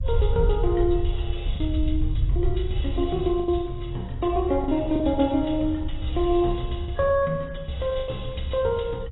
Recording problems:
lossy compression; AAC, log-spectral distance 4 dB, nothing above 3.8 kHz
rumble; below 78 Hz, SNR 5 dB
lost packets; 4% of the sound replaced, filled with the last packet

